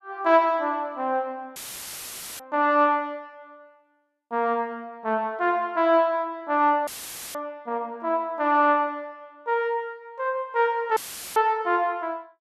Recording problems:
dropout; at 1.5 s for 1 s, at 7 s and at 11 s; filled with static

